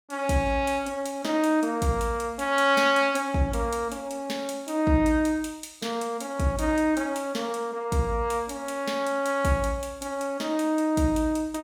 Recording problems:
none

